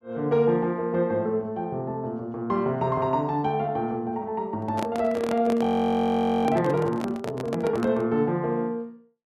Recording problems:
microphone handling noise; from 4.5 to 8 s; peak -2 dB vs average level
frozen audio; at 5.5 s for 1 s

